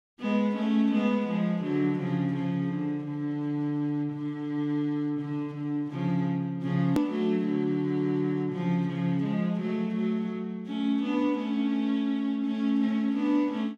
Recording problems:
click at an edit; at 7 s

